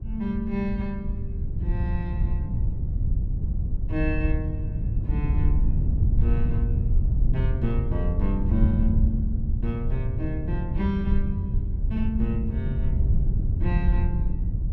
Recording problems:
wind noise; below 92 Hz, SNR -5 dB

